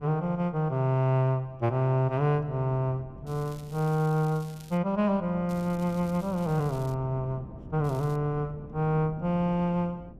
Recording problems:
wind on the microphone; below 250 Hz, SNR 19 dB
crackle; from 3.5 to 5 s, from 5.5 to 7 s and at 8 s; loose cable, SNR 25 dB

